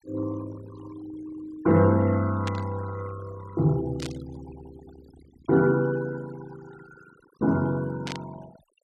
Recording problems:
denoising artefacts; signal-to-artefact ratio 19 dB
burst of static; at 2.5 s, at 4 s and at 8 s; peak -6 dB vs average level

